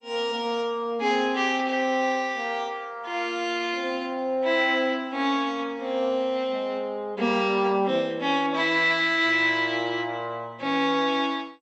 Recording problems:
lossy codec; MP2, log-spectral distance 3 dB, nothing above 7.6 kHz

